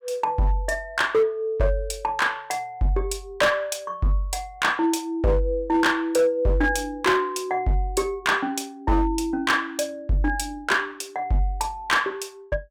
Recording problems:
distorted audio; hard clipping, signal-to-distortion ratio 11 dB

